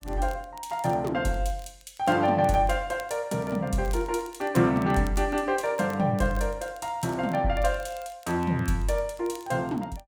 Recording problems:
crackling; vinyl, SNR 26 dB

